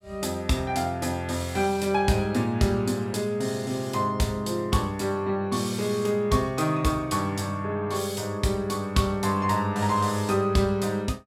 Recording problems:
none

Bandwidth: 16 kHz